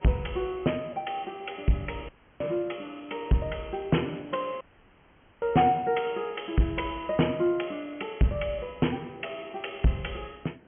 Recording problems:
treble cut off; nothing above 3.2 kHz
distorted audio; hard clipping, signal-to-distortion ratio 11 dB
hiss; SNR 26 dB
audio cutting out; at 2 s and at 4.5 s for 1 s
crackling; from 3 to 4.5 s; loose cable, SNR 30 dB

